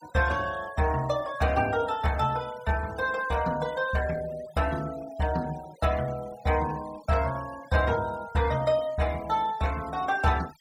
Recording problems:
noise reduction artefacts; signal-to-artefact ratio 19 dB

